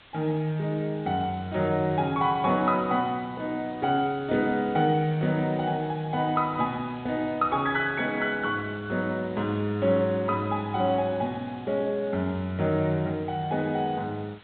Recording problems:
treble missing; nothing above 4 kHz
hiss; SNR 24 dB

